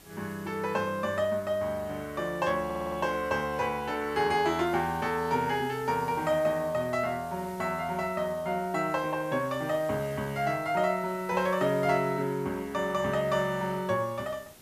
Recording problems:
hiss; slope -3 dB per octave, SNR 22 dB
audio stuttering; at 2.5 s

